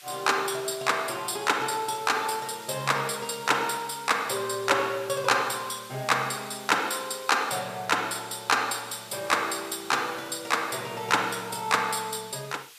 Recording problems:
background hiss; SNR 19 dB

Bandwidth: 14.5 kHz